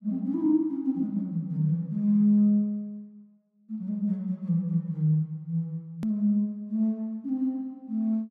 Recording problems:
click at an edit; at 6 s

